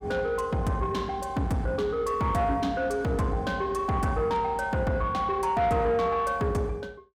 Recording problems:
distorted audio; soft clipping, signal-to-distortion ratio 11 dB

